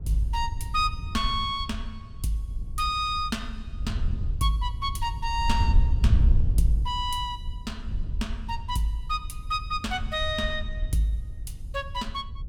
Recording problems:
wind on the microphone; below 74 Hz, SNR 2 dB

